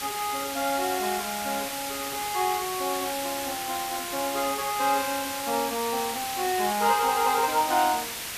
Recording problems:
hiss; slope 0 dB per octave, SNR 4 dB

